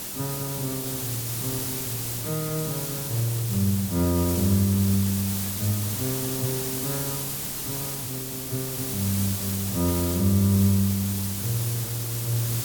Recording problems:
hiss; SNR 2 dB

